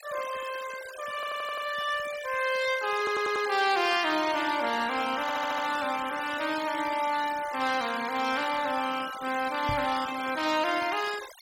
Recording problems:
noise reduction artefacts; signal-to-artefact ratio 12 dB
stutter; at 1 s, at 3 s and at 5 s
microphone thump; at 9.5 s; peak -3 dB vs average level

